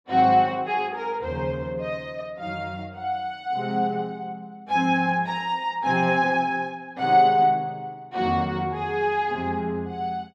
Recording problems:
none

